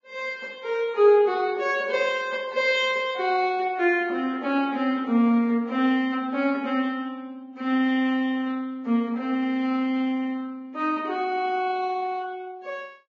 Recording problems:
lossy compression; Vorbis, log-spectral distance 2 dB, nothing above 6.7 kHz

